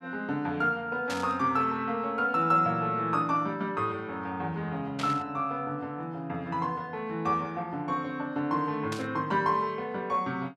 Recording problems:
static burst; at 1 s, at 5 s and at 9 s; peak -3 dB vs average level

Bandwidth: 13 kHz